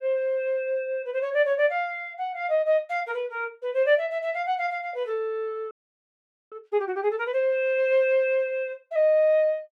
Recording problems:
audio freezing; at 5.5 s for 1 s

